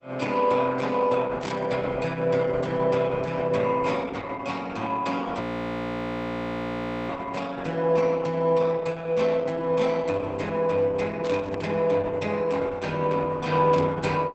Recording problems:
lossy codec; Opus, log-spectral distance 4 dB
burst of static; at 1.5 s, at 11 s and at 14 s; peak -10 dB vs average level
frozen audio; at 5.5 s for 1.5 s

